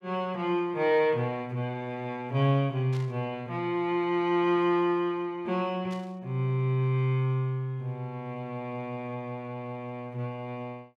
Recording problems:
static burst; at 3 s and at 6 s; peak -13 dB vs average level

